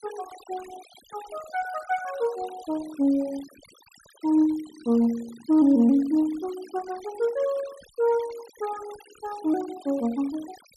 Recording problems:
denoising artefacts; signal-to-artefact ratio 21 dB

